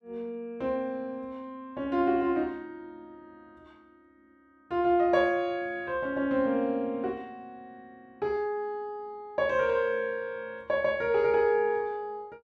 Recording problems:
none

